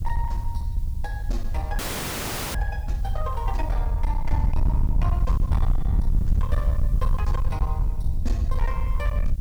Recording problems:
distortion; hard clipping, uneven, signal-to-distortion ratio 6 dB
hiss; slope +1 dB per octave, SNR 20 dB
low-frequency rumble; below 70 Hz, SNR -9 dB
audio freezing; at 2 s for 1 s

